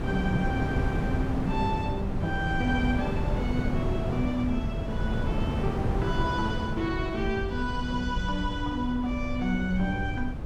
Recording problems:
background hiss; slope -9 dB per octave, SNR 23 dB
low-frequency rumble; below 74 Hz, SNR 6 dB
wind on the microphone; below 360 Hz, SNR 1 dB

